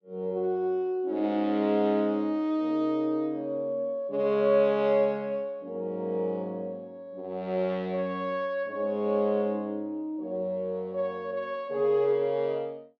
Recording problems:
none

